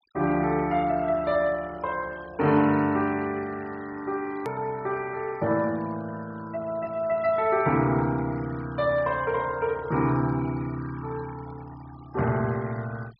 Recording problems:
treble missing; nothing above 5.5 kHz
denoising artefacts; signal-to-artefact ratio 22 dB
edit click; at 4.5 s

